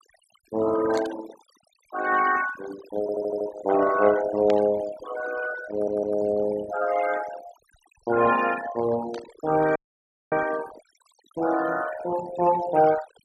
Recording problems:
noise reduction artefacts; signal-to-artefact ratio 12 dB
static burst; at 1 s, at 4.5 s and at 9 s; peak -7 dB vs average level
audio stuttering; at 3 s and at 5.5 s
dropout; at 10 s for 0.5 s

